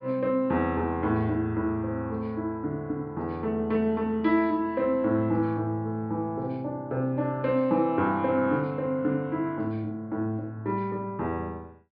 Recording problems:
treble cut off; nothing above 5.5 kHz

